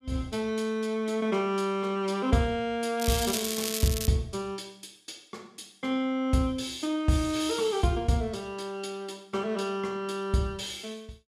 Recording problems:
crackling; from 3 to 4 s; loose cable, SNR 3 dB

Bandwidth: 14.5 kHz